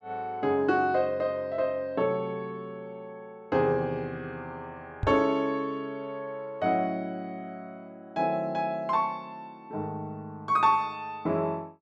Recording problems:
microphone thump; at 5 s; peak +2 dB vs average level

